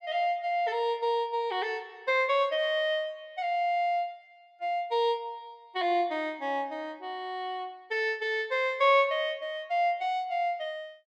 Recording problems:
none

